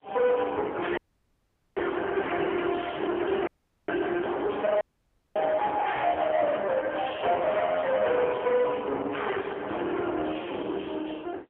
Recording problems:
telephone audio; 300 Hz to 3.2 kHz, AMR-NB, then MP3
distortion; soft clipping, signal-to-distortion ratio 8 dB
audio cutting out; at 1 s for 1 s, at 3.5 s and at 5 s for 0.5 s

